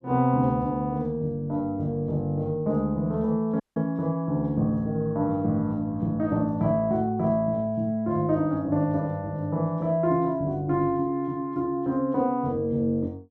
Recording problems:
audio cutting out; at 3.5 s

